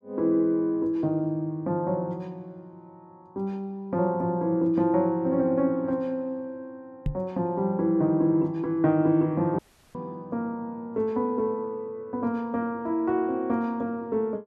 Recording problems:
microphone bump; at 7 s; peak +1 dB vs average level
audio cutting out; at 9.5 s

